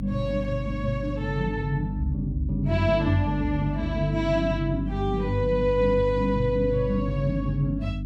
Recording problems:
electrical hum; 50 Hz, harmonics up to 300 Hz, SNR 5 dB

